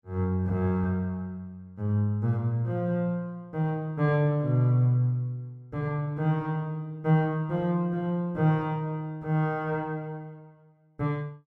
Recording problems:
none

